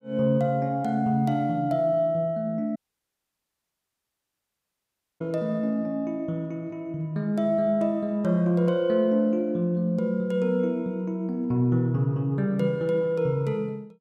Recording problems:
audio cutting out; at 3 s for 2.5 s

